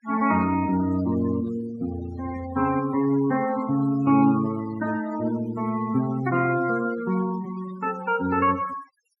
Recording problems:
denoising artefacts; signal-to-artefact ratio 16 dB

